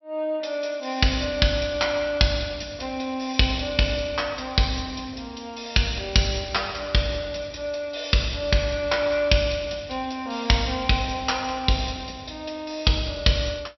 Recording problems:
treble cut off; nothing above 5.7 kHz

